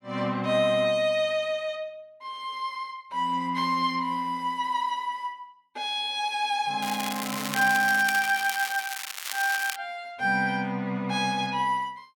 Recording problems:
crackling; from 7 to 10 s; loose cable, SNR 7 dB

